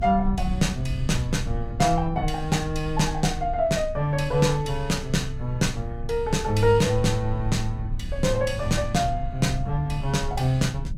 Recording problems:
hum; 50 Hz, harmonics up to 300 Hz, SNR 20 dB
rumble; below 68 Hz, strongest tone 24 Hz, SNR 9 dB

